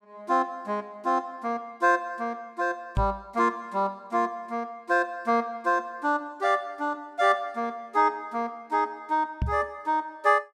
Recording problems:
knock on the microphone; at 3 s and at 9.5 s; peak +3 dB vs average level

